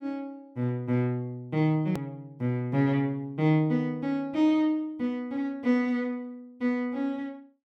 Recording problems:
hard cut with a click; at 2 s

